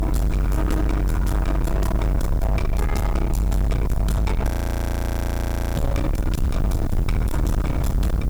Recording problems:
distortion; soft clipping, signal-to-distortion ratio 7 dB
background hiss; slope +4 dB per octave, SNR 24 dB
rumble; below 130 Hz, strongest tone 48 Hz, SNR -2 dB
frozen audio; at 4.5 s for 1.5 s

